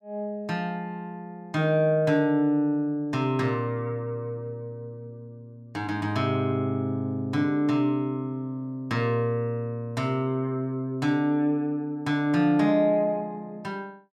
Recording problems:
none

